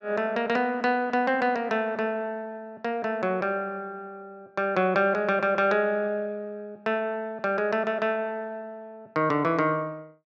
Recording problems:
none

